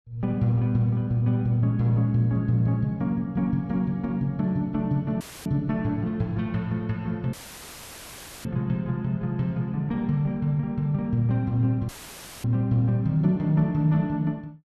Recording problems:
dropout; at 5 s, at 7.5 s for 1 s and at 12 s for 0.5 s; filled with static

